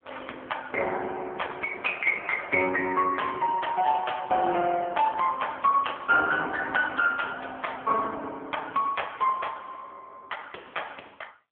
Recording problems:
telephone audio; 320 Hz to 3.3 kHz, AMR-NB

